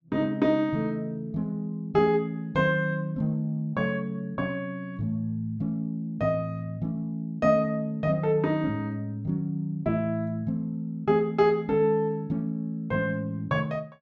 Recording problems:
none

